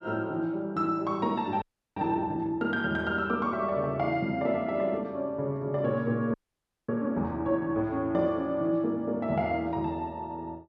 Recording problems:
frozen audio; at 1.5 s and at 6.5 s for 0.5 s

